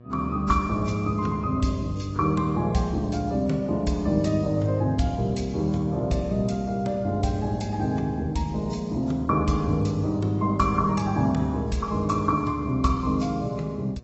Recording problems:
codec artefacts; AAC, log-spectral distance 2 dB, nothing above 7.8 kHz
hum; 60 Hz, harmonics up to 1.2 kHz, SNR 24 dB

